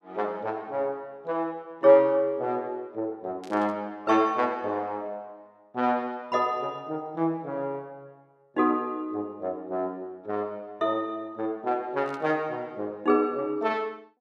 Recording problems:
burst of static; at 3.5 s and at 12 s; peak -16 dB vs average level

